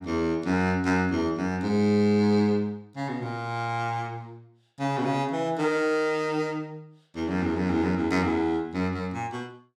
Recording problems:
none

